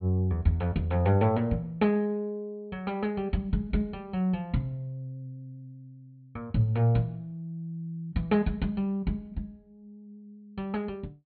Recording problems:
treble cut off; nothing above 4.4 kHz

